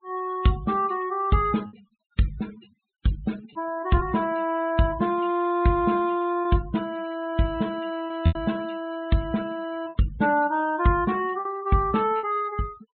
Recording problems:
treble missing; nothing above 4 kHz
denoising artefacts; signal-to-artefact ratio 21 dB
lost packets; 3% of the sound replaced, filled with repeated pitch periods

